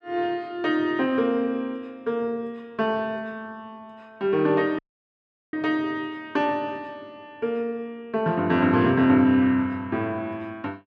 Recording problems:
audio cutting out; at 5 s for 0.5 s

